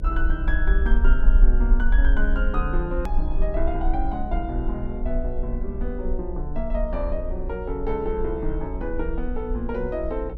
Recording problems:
electrical hum; 60 Hz, harmonics up to 600 Hz, SNR 7 dB
low-frequency rumble; below 42 Hz, SNR -2 dB
click at an edit; at 3 s

